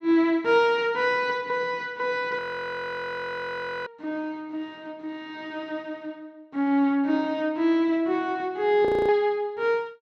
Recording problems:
frozen audio; at 2.5 s for 1.5 s and at 9 s

